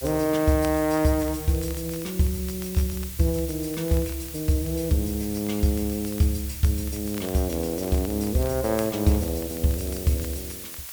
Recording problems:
background hiss; slope +3 dB per octave, SNR 10 dB
crackling; vinyl, SNR 23 dB

